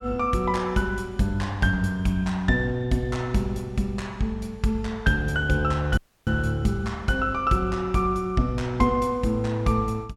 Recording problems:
dropout; at 6 s

